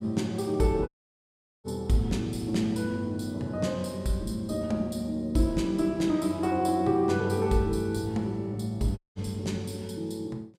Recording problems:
audio cutting out; at 1 s for 1 s and at 9 s

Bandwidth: 15.5 kHz